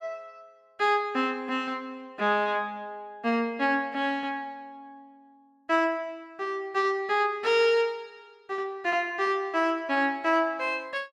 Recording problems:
none

